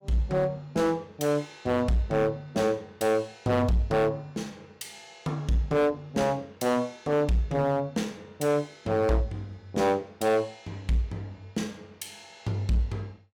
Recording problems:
distortion; hard clipping, signal-to-distortion ratio 8 dB

